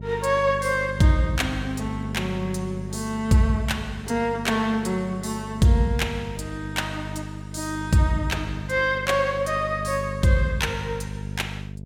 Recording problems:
hum; 50 Hz, harmonics up to 500 Hz, SNR 10 dB

